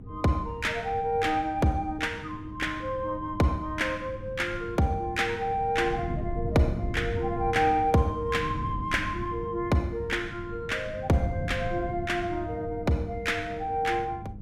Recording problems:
hum; 50 Hz, harmonics up to 500 Hz, SNR 18 dB
wind noise; below 180 Hz, SNR 11 dB

